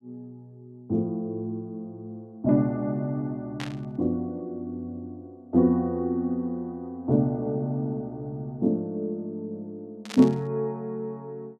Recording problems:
burst of static; at 3.5 s and at 10 s; peak -5 dB vs average level

